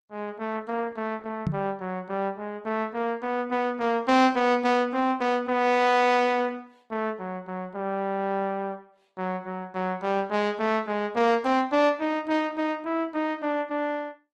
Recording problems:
lossy codec; Opus, log-spectral distance 2 dB
microphone bump; at 1.5 s; peak +3 dB vs average level

